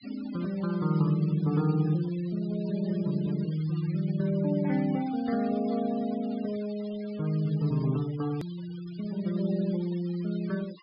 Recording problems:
treble missing; nothing above 5.2 kHz
noise reduction artefacts; signal-to-artefact ratio 21 dB
click at an edit; at 8.5 s

